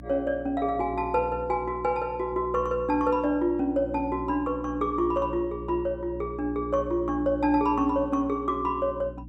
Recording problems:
electrical hum; 60 Hz, harmonics up to 300 Hz, SNR 14 dB

